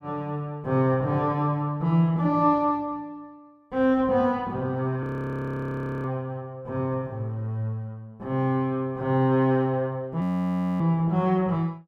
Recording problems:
frozen audio; at 5 s for 1 s and at 10 s for 0.5 s

